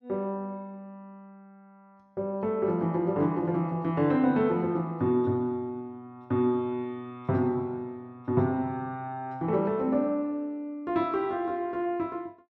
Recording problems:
none

